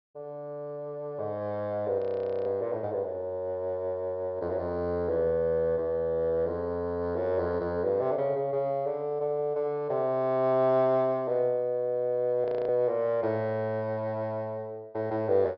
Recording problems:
low-pass filter; nothing above 5.5 kHz
audio freezing; at 2 s and at 12 s

